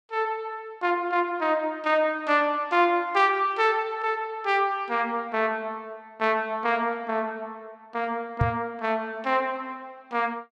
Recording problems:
microphone thump; at 8.5 s; peak +5 dB vs average level

